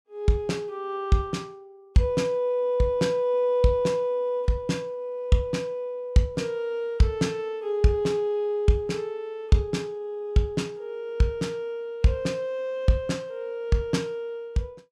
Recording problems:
none

